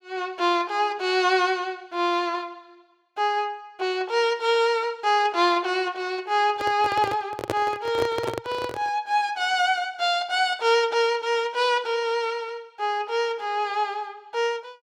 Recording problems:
microphone handling noise; from 6.5 to 9 s; peak +2 dB vs average level

